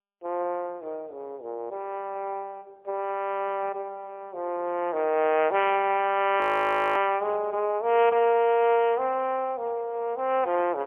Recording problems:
telephone audio; 370 Hz to 3.3 kHz, AMR-NB, then MP3
audio freezing; at 6.5 s for 0.5 s

